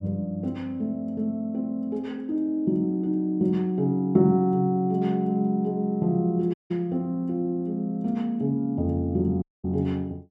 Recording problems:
dropout; at 6.5 s and at 9.5 s

